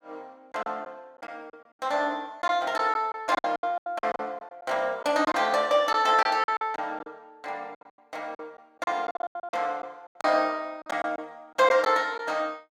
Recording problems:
lost packets; 12% of the sound replaced, filled with silence

